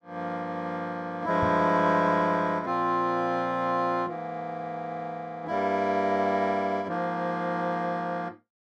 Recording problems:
knock on the microphone; at 1.5 s; peak -3 dB vs average level

